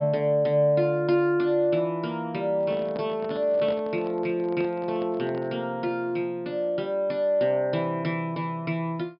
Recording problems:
low-pass filter; nothing above 5.5 kHz
microphone handling noise; from 2.5 to 5.5 s; peak -9 dB vs average level

